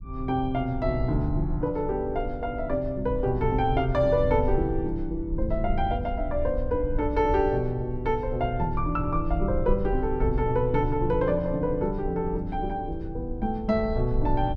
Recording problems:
low-frequency rumble; below 72 Hz, SNR 7 dB

